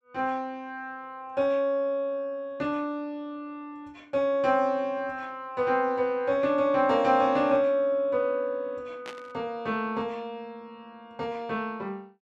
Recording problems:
burst of static; at 9 s; peak -9 dB vs average level

